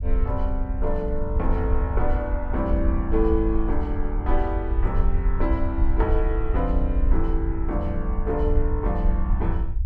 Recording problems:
rumble; below 60 Hz, SNR -2 dB

